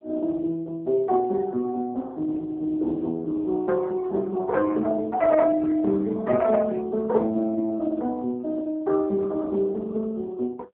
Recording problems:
phone line; 170 Hz to 2.6 kHz, AMR-NB

